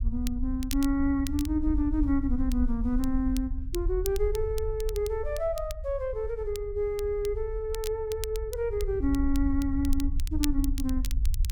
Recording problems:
low-frequency rumble; below 60 Hz, SNR 5 dB
crackle; vinyl, SNR 14 dB

